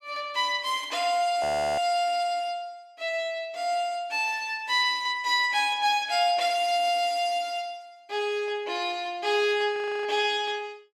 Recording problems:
frozen audio; at 1.5 s and at 10 s

